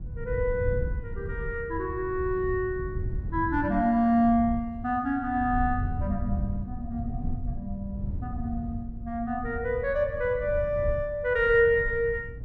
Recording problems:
rumble; below 110 Hz, SNR 8 dB

